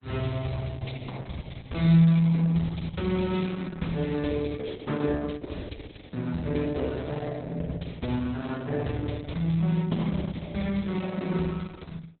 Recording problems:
codec artefacts; Opus, log-spectral distance 5 dB, nothing above 4 kHz

